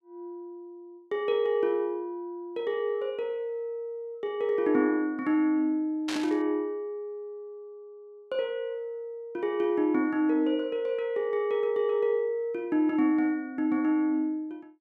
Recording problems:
static burst; at 6 s; peak -3 dB vs average level

